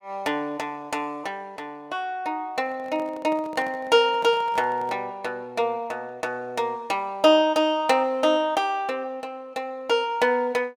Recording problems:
handling noise; from 2.5 to 5 s; peak -11 dB vs average level

